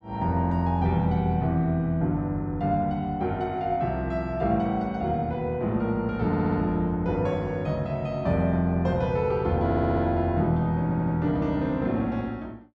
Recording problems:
audio stuttering; at 6.5 s, at 9.5 s and at 11 s

